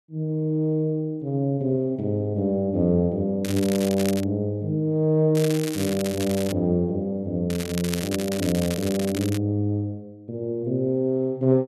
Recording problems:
crackling; at 3.5 s, from 5.5 to 6.5 s and from 7.5 to 9.5 s; loose cable, SNR 11 dB

